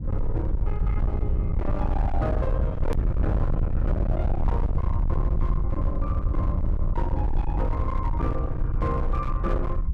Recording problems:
distorted audio; hard clipping, uneven, signal-to-distortion ratio 7 dB
rumble; below 88 Hz, SNR -5 dB
click at an edit; at 3 s

